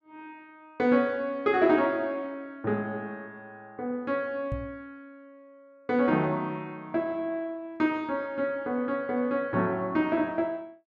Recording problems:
microphone bump; at 4.5 s; peak -2 dB vs average level

